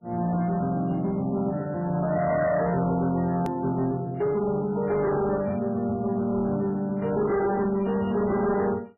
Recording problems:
lossy compression; MP3, log-spectral distance 2 dB, nothing above 13.1 kHz
distorted audio; hard clipping, uneven, signal-to-distortion ratio 11 dB
click at an edit; at 3.5 s

